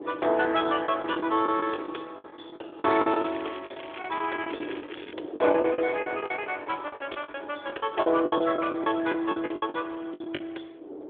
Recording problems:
telephone audio; 280 Hz to 3.5 kHz, AMR-NB
wind noise; below 470 Hz, SNR 15 dB
lost packets; 16% of the sound replaced, filled with the last packet
crackle; from 3 to 5 s; loose cable, SNR 17 dB

